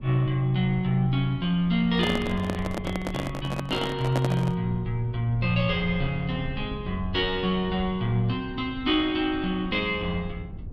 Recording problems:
rumble; below 110 Hz, SNR 14 dB
handling noise; from 2 to 4.5 s; peak +2 dB vs average level

